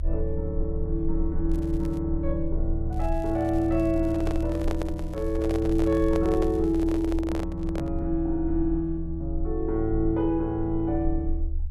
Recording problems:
rumble; below 72 Hz, strongest tone 30 Hz, SNR 6 dB
crackling; at 1.5 s and from 3 to 7 s; loose cable, SNR 27 dB
microphone handling noise; from 4 to 8 s; peak -3 dB vs average level

